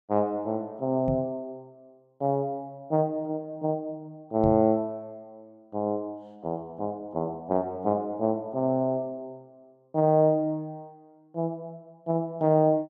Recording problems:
knock on the microphone; at 1 s and at 4.5 s; peak 0 dB vs average level

